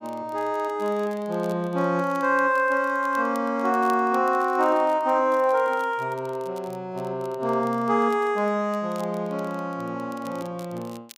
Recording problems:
crackle; vinyl, SNR 27 dB

